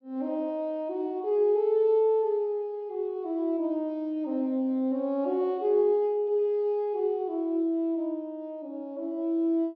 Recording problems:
none

